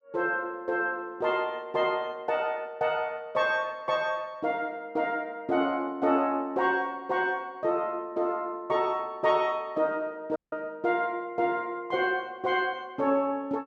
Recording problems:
audio cutting out; at 10 s

